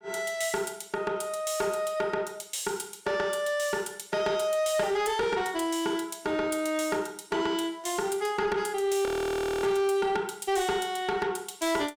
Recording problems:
distorted audio; soft clipping, signal-to-distortion ratio 11 dB
audio freezing; at 9 s for 0.5 s

